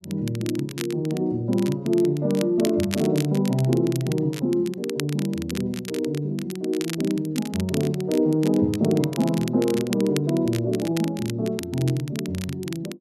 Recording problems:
crackle; vinyl, SNR 14 dB

